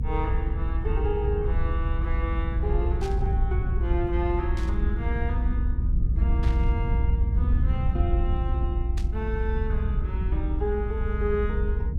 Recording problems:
low-frequency rumble; below 78 Hz, SNR -6 dB
static burst; 4 times, first at 3 s; peak -5 dB vs average level

